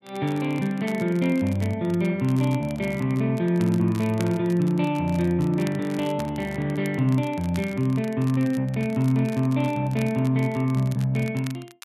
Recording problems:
crackling; vinyl, SNR 22 dB

